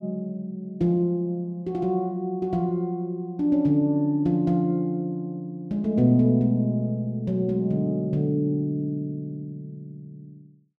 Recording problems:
none

